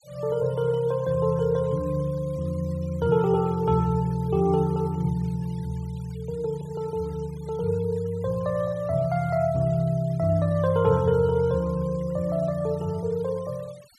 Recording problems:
noise reduction artefacts; signal-to-artefact ratio 26 dB

